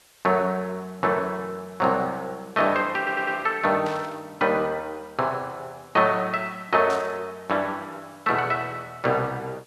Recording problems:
background hiss; slope 0 dB per octave, SNR 29 dB
stutter; at 3 s
static burst; at 4 s and at 7 s; peak -10 dB vs average level

